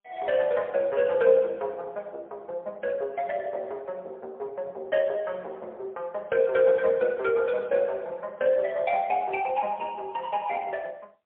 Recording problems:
telephone audio; 280 Hz to 3.5 kHz, AMR-NB, then MP3

